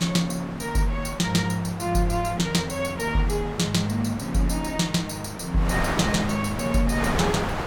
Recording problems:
wind on the microphone; below 1.4 kHz, SNR 7 dB

